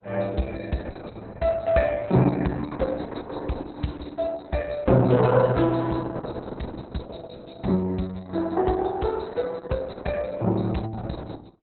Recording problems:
codec artefacts; Opus, log-spectral distance 5 dB, nothing above 4.1 kHz

